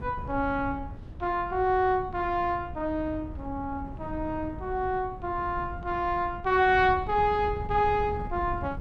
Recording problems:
wind on the microphone; below 140 Hz, SNR 12 dB

